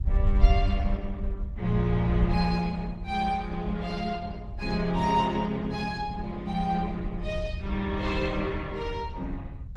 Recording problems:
lossy codec; Opus, log-spectral distance 2 dB
rumble; below 70 Hz, SNR 3 dB

